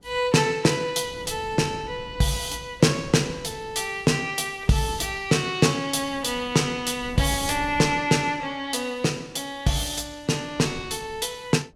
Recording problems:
wind on the microphone; below 280 Hz, SNR 19 dB

